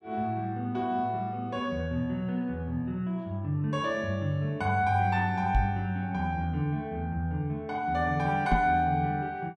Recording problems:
knock on the microphone; at 5.5 s and at 8.5 s; peak +6 dB vs average level

